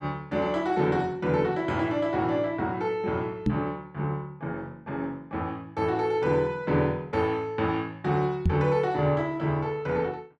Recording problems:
microphone thump; at 3.5 s and at 8.5 s; peak +6 dB vs average level

